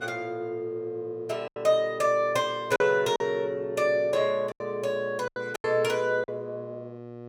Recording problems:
electrical hum; 60 Hz, harmonics up to 1.3 kHz, SNR 18 dB
lost packets; 6% of the sound replaced, filled with silence

